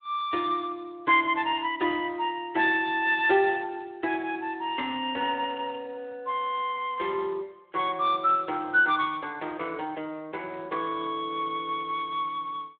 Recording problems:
phone line; 280 Hz to 3.7 kHz, Speex

